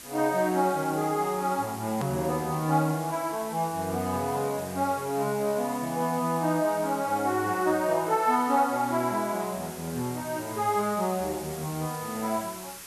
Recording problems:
background hiss; slope 0 dB per octave, SNR 14 dB
edit click; at 2 s

